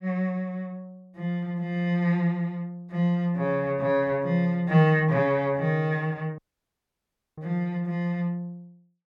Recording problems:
audio cutting out; at 6.5 s for 1 s

